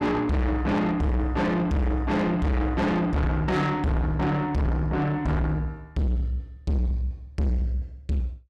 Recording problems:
distorted audio; soft clipping, signal-to-distortion ratio 6 dB

